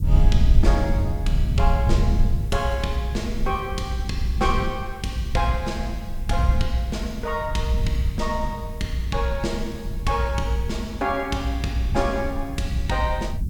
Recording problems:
background hiss; SNR 26 dB
low-frequency rumble; below 80 Hz, SNR 1 dB

